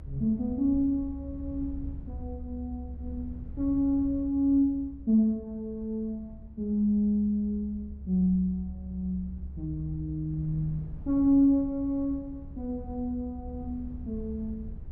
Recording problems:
low-frequency rumble; below 76 Hz, strongest tone 68 Hz, SNR 13 dB

